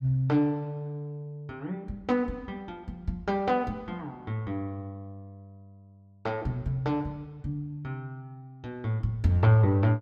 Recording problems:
none

